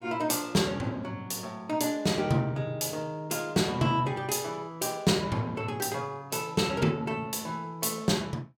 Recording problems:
none

